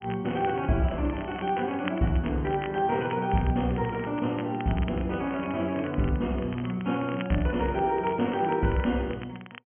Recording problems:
treble missing; nothing above 3.1 kHz
crackling; vinyl, SNR 17 dB

